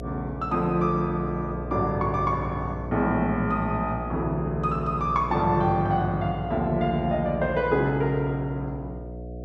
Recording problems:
hum; 60 Hz, harmonics up to 720 Hz, SNR 9 dB

